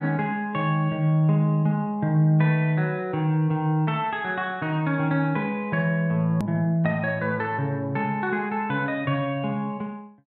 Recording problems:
hard cut with a click; at 6.5 s

